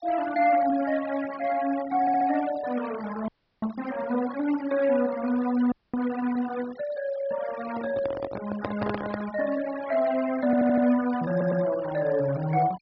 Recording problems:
low-pass filter; nothing above 5.5 kHz
denoising artefacts; signal-to-artefact ratio 16 dB
audio stuttering; at 2 s, at 10 s and at 11 s
audio freezing; at 3.5 s and at 5.5 s
handling noise; from 7.5 to 9 s; peak 0 dB vs average level

